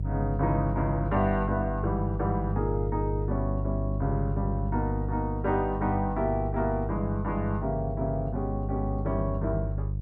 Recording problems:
mains hum; 50 Hz, harmonics up to 350 Hz, SNR 2 dB

